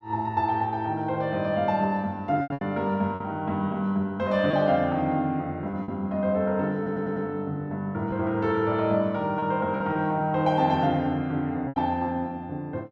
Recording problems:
lost packets; 4% of the sound replaced, filled with repeated pitch periods
stutter; at 7 s

